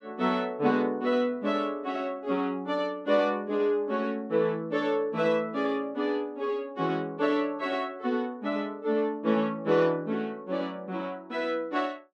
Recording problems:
none

